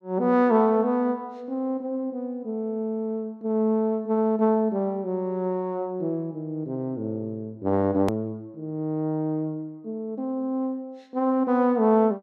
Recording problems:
hard cut with a click; at 8 s

